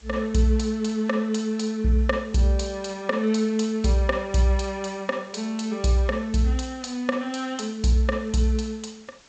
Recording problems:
lossy compression; G.722, log-spectral distance 4 dB, nothing above 7.3 kHz
background hiss; slope -1 dB per octave, SNR 27 dB

